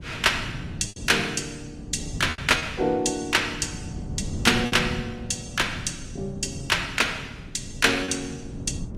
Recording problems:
lossy compression; AAC, log-spectral distance 3 dB
wind noise; below 220 Hz, SNR 11 dB
packet loss; 4% of the sound replaced, filled with repeated pitch periods

